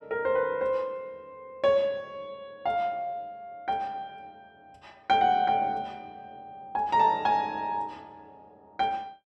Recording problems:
none

